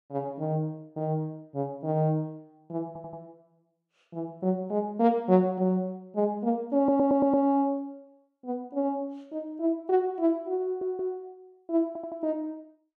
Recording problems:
audio stuttering; 4 times, first at 3 s

